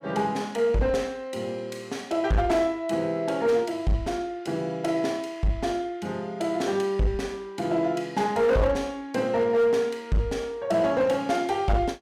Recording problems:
distortion; hard clipping, signal-to-distortion ratio 11 dB

